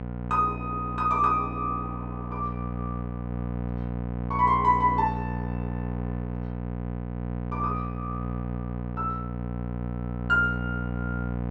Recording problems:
electrical hum; 60 Hz, harmonics up to 1.3 kHz, SNR 5 dB

